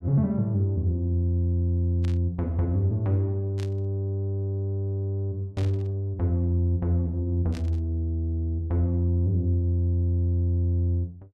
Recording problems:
static burst; 4 times, first at 2 s; peak -13 dB vs average level

